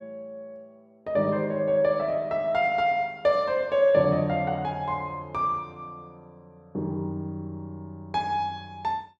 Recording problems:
none

